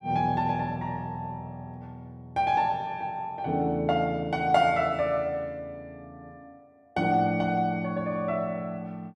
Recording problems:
none

